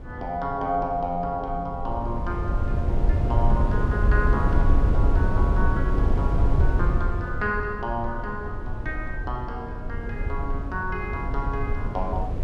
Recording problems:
wind noise; below 92 Hz, SNR -4 dB

